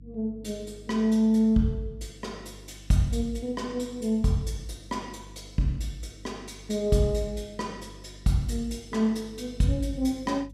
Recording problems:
hum; 50 Hz, harmonics up to 300 Hz, SNR 21 dB

